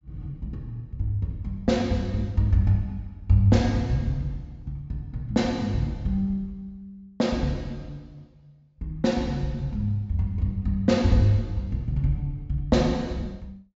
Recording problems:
treble missing; nothing above 8 kHz

